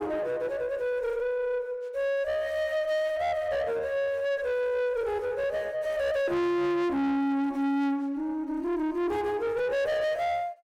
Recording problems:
distorted audio; soft clipping, signal-to-distortion ratio 7 dB

